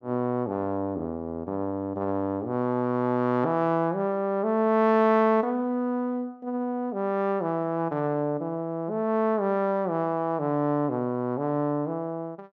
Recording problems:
none

